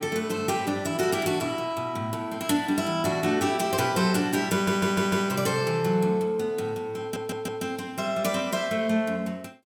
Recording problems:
audio stuttering; at 4.5 s and at 7 s

